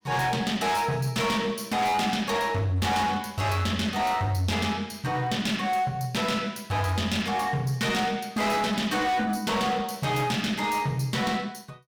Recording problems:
distortion; hard clipping, uneven, signal-to-distortion ratio 8 dB

